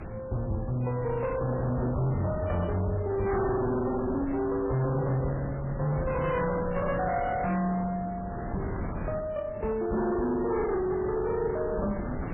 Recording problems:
lossy codec; MP3, log-spectral distance 3 dB, nothing above 2.4 kHz
distortion; hard clipping, uneven, signal-to-distortion ratio 8 dB
wind noise; below 530 Hz, SNR 9 dB

